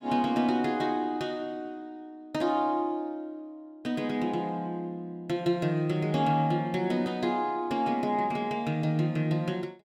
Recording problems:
none

